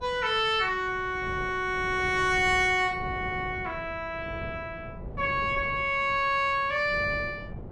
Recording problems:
wind on the microphone; below 310 Hz, SNR 15 dB

